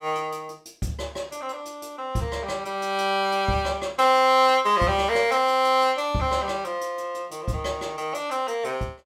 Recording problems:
none

